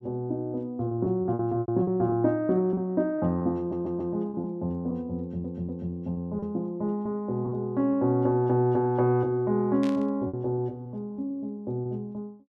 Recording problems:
packet loss; 7% of the sound replaced, filled with repeated pitch periods
stutter; at 3.5 s and at 5 s
static burst; at 10 s; peak -11 dB vs average level

